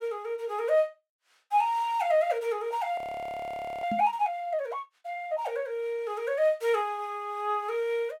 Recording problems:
frozen audio; at 3 s for 1 s
knock on the microphone; at 4 s; peak -2 dB vs average level

